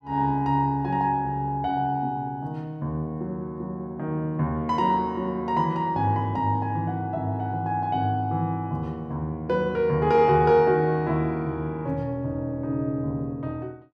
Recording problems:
none

